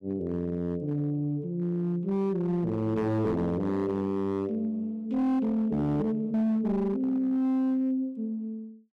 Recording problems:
distorted audio; hard clipping, signal-to-distortion ratio 12 dB

